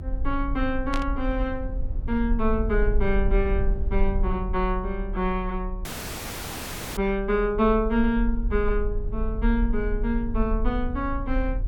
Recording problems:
rumble; below 46 Hz, SNR 4 dB
static burst; at 1 s; peak -3 dB vs average level
audio cutting out; at 6 s for 1 s

